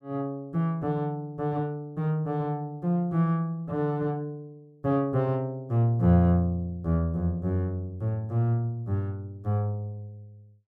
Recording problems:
none

